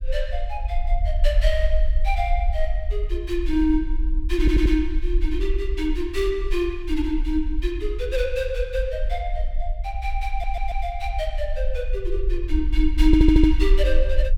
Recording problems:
rumble; below 48 Hz, SNR 0 dB
audio stuttering; at 4.5 s, at 10 s and at 13 s

